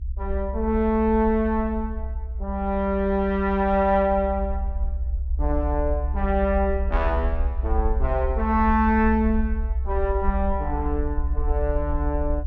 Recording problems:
rumble; below 66 Hz, SNR 4 dB

